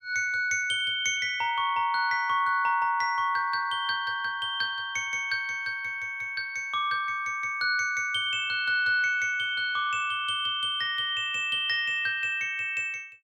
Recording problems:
none

